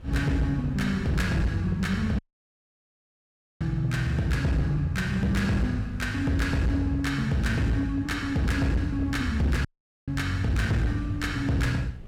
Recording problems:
distortion; hard clipping, signal-to-distortion ratio 11 dB
wind noise; below 170 Hz, SNR 20 dB
audio cutting out; at 2 s for 1.5 s and at 9.5 s

